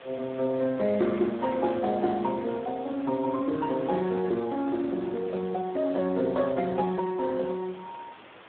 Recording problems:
phone line; 150 Hz to 2.8 kHz, Speex
hiss; SNR 20 dB

